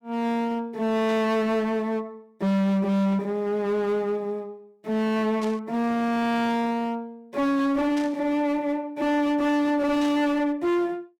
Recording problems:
distorted audio; hard clipping, signal-to-distortion ratio 6 dB
static burst; 4 times, first at 1 s; peak -10 dB vs average level

